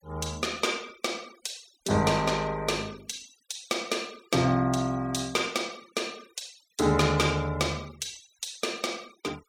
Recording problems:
noise reduction artefacts; signal-to-artefact ratio 22 dB

